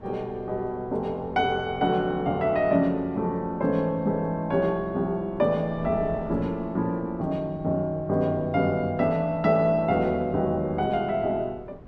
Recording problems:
wind noise; below 460 Hz, SNR 19 dB

